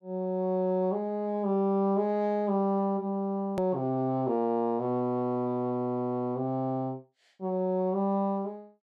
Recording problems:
click at an edit; at 3.5 s

